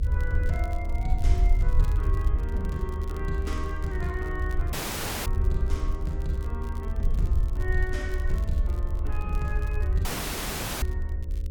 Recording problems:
electrical hum; 60 Hz, harmonics up to 540 Hz, SNR 11 dB
rumble; below 74 Hz, SNR -6 dB
crackle; vinyl, SNR 20 dB
audio cutting out; at 4.5 s for 0.5 s and at 10 s for 1 s

